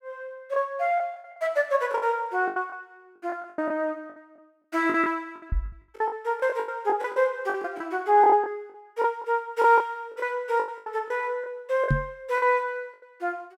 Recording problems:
packet loss; 14% of the sound replaced, filled with the last packet
knock on the microphone; at 5.5 s and at 12 s; peak +5 dB vs average level

